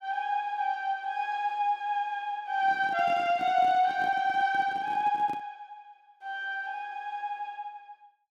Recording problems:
microphone handling noise; from 2.5 to 5.5 s; peak -10 dB vs average level

